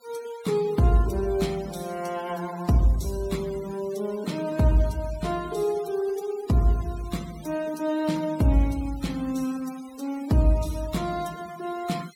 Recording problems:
denoising artefacts; signal-to-artefact ratio 20 dB

